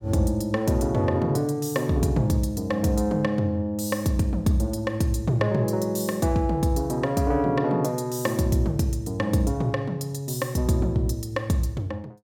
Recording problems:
none

